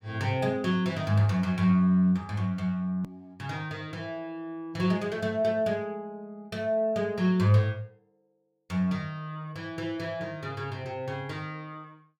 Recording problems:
hard cut with a click; at 3 s

